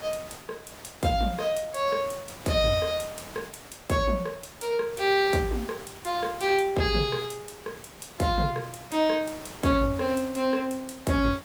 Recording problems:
background hiss; slope -4 dB per octave, SNR 17 dB

